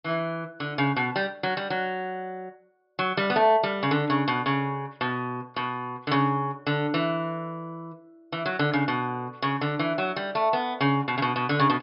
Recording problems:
treble missing; nothing above 5.5 kHz

